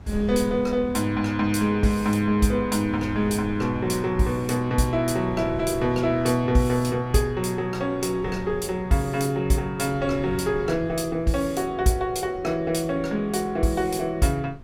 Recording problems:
wind noise; below 180 Hz, SNR 17 dB

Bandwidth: 16.5 kHz